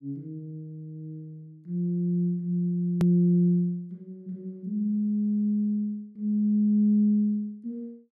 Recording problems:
hard cut with a click; at 3 s

